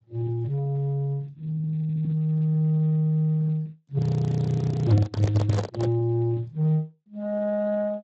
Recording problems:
lossy codec; Speex, log-spectral distance 2 dB, nothing above 7.3 kHz
frozen audio; at 4 s for 1 s
microphone handling noise; from 5 to 6 s; peak +3 dB vs average level

